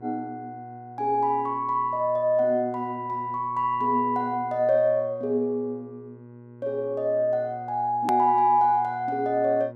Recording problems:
hum; 60 Hz, harmonics up to 1.4 kHz, SNR 20 dB
hard cut with a click; at 8 s

